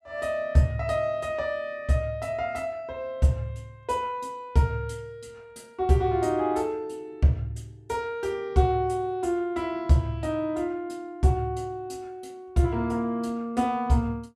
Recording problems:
none

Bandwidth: 14.5 kHz